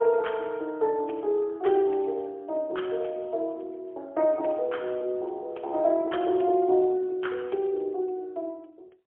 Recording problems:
phone line; 320 Hz to 3.3 kHz, AMR-NB, then MP3

